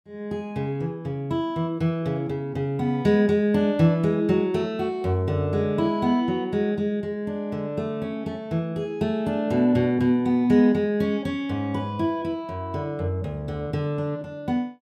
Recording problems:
none

